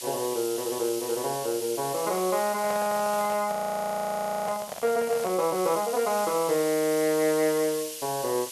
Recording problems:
background hiss; SNR 9 dB
handling noise; from 2.5 to 5.5 s; peak -5 dB vs average level
audio freezing; at 3.5 s for 1 s

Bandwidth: 12.5 kHz